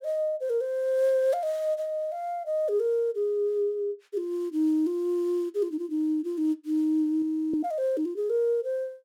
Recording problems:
audio freezing; at 7 s

